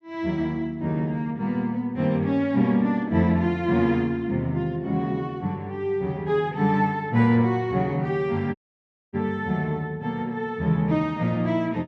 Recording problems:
dropout; at 8.5 s for 0.5 s

